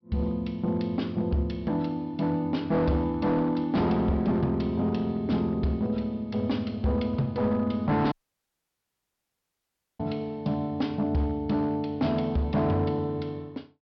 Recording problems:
low-pass filter; nothing above 5.5 kHz
distorted audio; hard clipping, signal-to-distortion ratio 11 dB
dropout; at 8 s for 2 s

